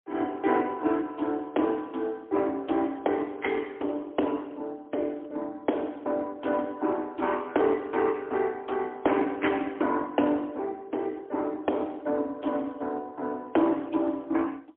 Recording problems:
phone line; 240 Hz to 3.5 kHz, AMR-NB, then MP3

